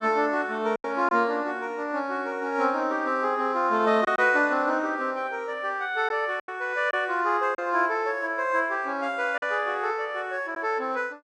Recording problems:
packet loss; 3% of the sound replaced, filled with silence

